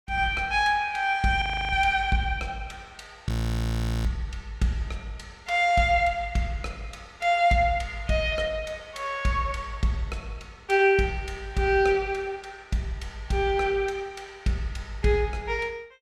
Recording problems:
audio freezing; at 1.5 s and at 3.5 s for 1 s

